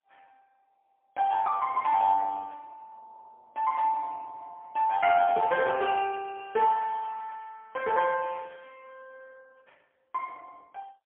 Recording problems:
telephone audio; 320 Hz to 3.2 kHz, AMR-NB, then MP3

